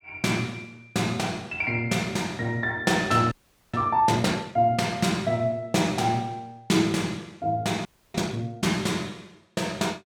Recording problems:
audio freezing; at 3.5 s and at 8 s

